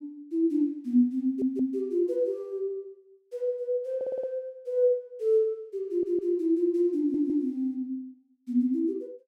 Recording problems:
audio stuttering; 4 times, first at 1 s

